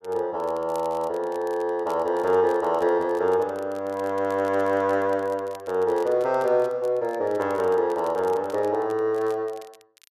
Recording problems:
crackle; vinyl, SNR 27 dB

